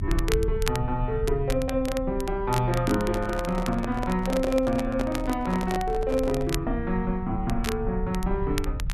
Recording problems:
low-frequency rumble; below 70 Hz, strongest tone 34 Hz, SNR 7 dB
crackle; vinyl, SNR 12 dB
microphone handling noise; from 3 to 6.5 s; peak 0 dB vs average level

